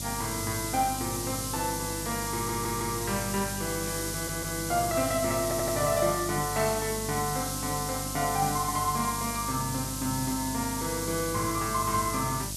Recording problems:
electrical hum; 50 Hz, harmonics up to 950 Hz, SNR 10 dB
hiss; SNR 3 dB
stutter; at 2.5 s, at 4 s and at 5.5 s

